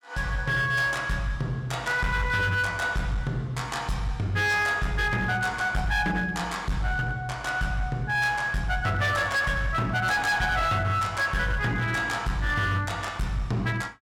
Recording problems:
distortion; hard clipping, uneven, signal-to-distortion ratio 10 dB

